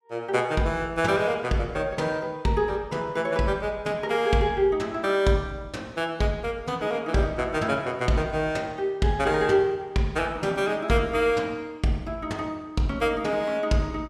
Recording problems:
none

